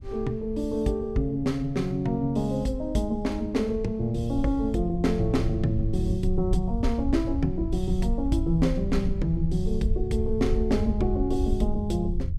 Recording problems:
low-frequency rumble; below 78 Hz, SNR 6 dB

